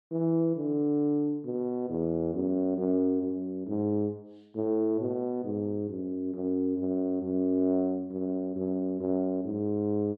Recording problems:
none

